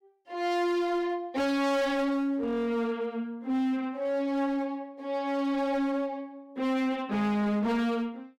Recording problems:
distorted audio; hard clipping, signal-to-distortion ratio 6 dB

